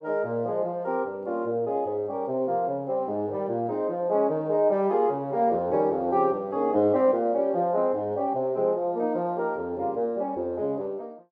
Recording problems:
none

